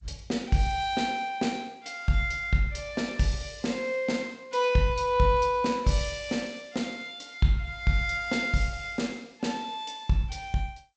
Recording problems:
lossy codec; G.722, log-spectral distance 3 dB, nothing above 8 kHz

